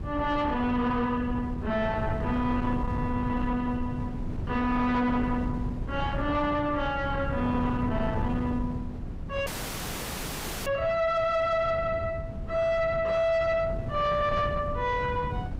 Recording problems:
distortion; soft clipping, signal-to-distortion ratio 10 dB
wind on the microphone; below 200 Hz, SNR 6 dB
dropout; at 9.5 s for 1 s

